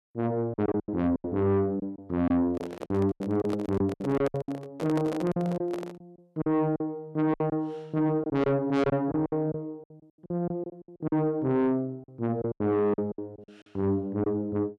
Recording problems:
distortion; soft clipping, signal-to-distortion ratio 7 dB
lost packets; 12% of the sound replaced, filled with silence
handling noise; from 2.5 to 6 s; peak -2 dB vs average level

